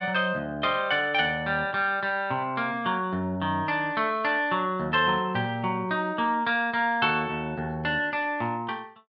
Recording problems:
none

